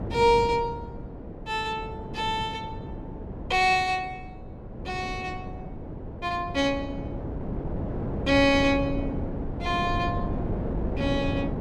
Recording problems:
wind noise; below 360 Hz, SNR 7 dB

